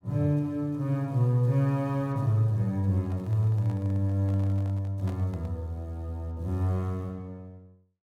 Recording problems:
microphone handling noise; from 3 to 5.5 s; peak -12 dB vs average level

